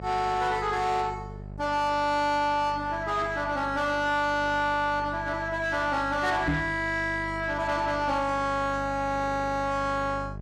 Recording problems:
distortion; soft clipping, signal-to-distortion ratio 11 dB
mains hum; 50 Hz, harmonics up to 800 Hz, SNR 13 dB
knock on the microphone; at 6.5 s; peak +4 dB vs average level

